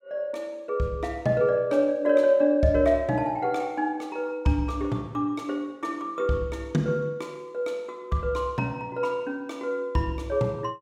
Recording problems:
none

